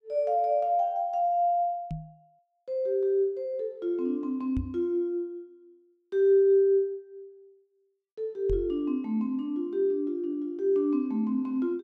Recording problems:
microphone bump; at 2 s, at 4.5 s and at 8.5 s; peak -2 dB vs average level

